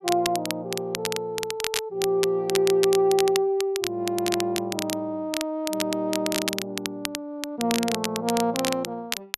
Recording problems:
crackling; vinyl, SNR 5 dB

